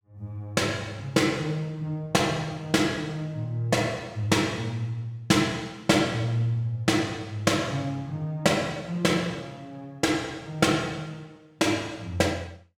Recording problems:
none

